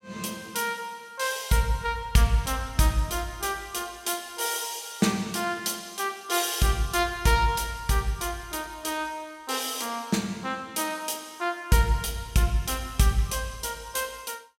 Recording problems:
none

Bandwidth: 16 kHz